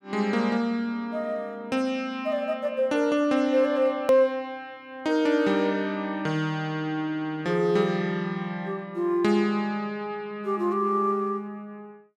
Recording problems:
edit click; at 4 s

